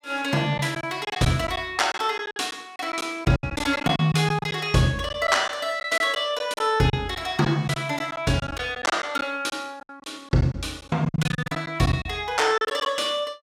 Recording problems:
packet loss; 11% of the sound replaced, filled with silence

